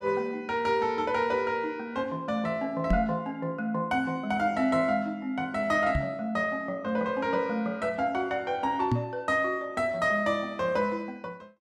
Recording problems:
microphone bump; at 3 s, at 6 s and at 9 s; peak +5 dB vs average level

